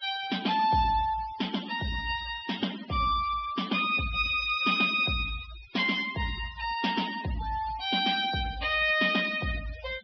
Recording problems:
treble missing; nothing above 5.5 kHz
denoising artefacts; signal-to-artefact ratio 15 dB

